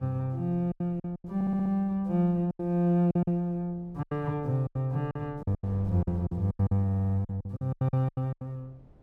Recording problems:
wind on the microphone; below 280 Hz, SNR 24 dB
packet loss; 16% of the sound replaced, filled with silence
audio stuttering; at 1.5 s and at 7 s

